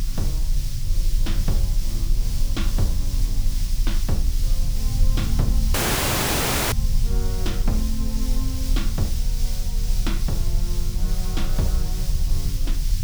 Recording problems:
background hiss; SNR 4 dB
low-frequency rumble; below 40 Hz, strongest tone 20 Hz, SNR -5 dB
wind on the microphone; below 120 Hz, SNR 9 dB
audio cutting out; at 5.5 s for 1 s

